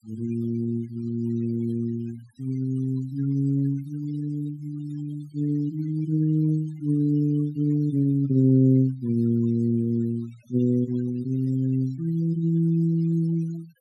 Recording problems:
noise reduction artefacts; signal-to-artefact ratio 27 dB

